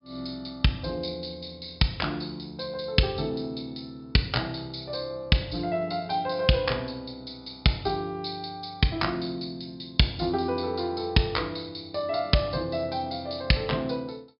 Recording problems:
treble cut off; nothing above 5.5 kHz

